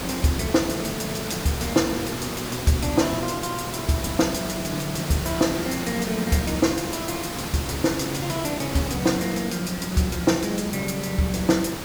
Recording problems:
hiss; slope -4 dB per octave, SNR 6 dB

